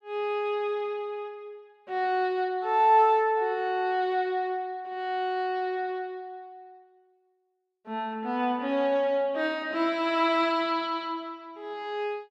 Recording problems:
none

